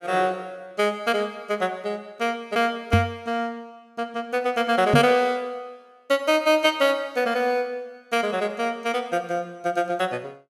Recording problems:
microphone thump; at 3 s and at 5 s; peak +8 dB vs average level

